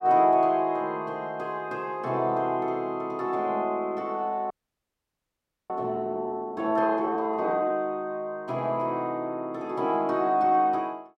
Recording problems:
frozen audio; at 4.5 s for 1 s

